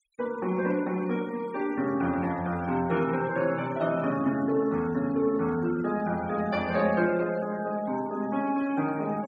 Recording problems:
noise reduction artefacts; signal-to-artefact ratio 20 dB

